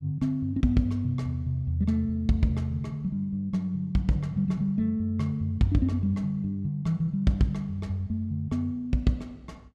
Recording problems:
none

